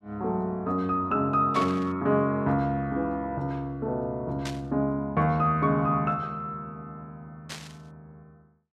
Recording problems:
static burst; at 1.5 s, at 4.5 s and at 7.5 s; peak -5 dB vs average level

